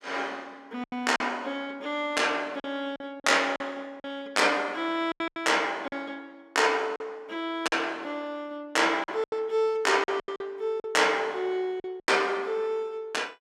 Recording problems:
packet loss; 8% of the sound replaced, filled with silence

